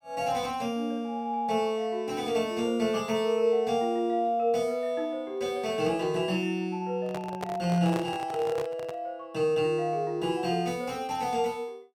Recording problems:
handling noise; from 7 to 9 s; peak -3 dB vs average level

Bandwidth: 17 kHz